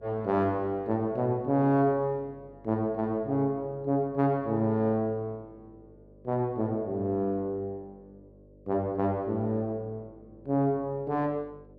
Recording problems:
hum; 50 Hz, harmonics up to 600 Hz, SNR 26 dB

